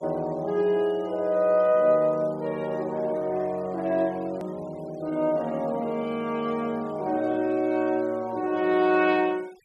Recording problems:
noise reduction artefacts; signal-to-artefact ratio 26 dB
edit click; at 4.5 s

